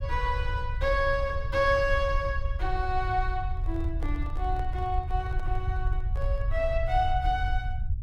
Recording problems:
rumble; below 70 Hz, SNR 2 dB
microphone handling noise; from 3.5 to 6.5 s; peak -10 dB vs average level

